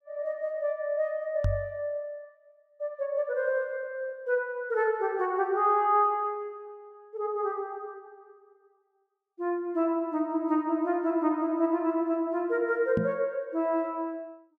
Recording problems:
microphone bump; at 1.5 s and at 13 s; peak +4 dB vs average level

